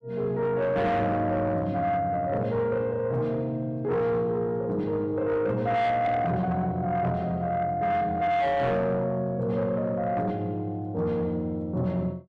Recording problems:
distorted audio; soft clipping, signal-to-distortion ratio 10 dB

